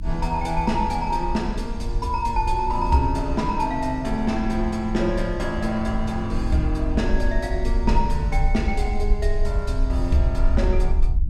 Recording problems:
hum; 60 Hz, harmonics up to 300 Hz, SNR 19 dB
low-frequency rumble; below 56 Hz, SNR 3 dB

